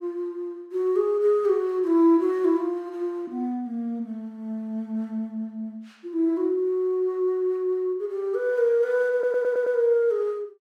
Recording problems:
stutter; at 9 s

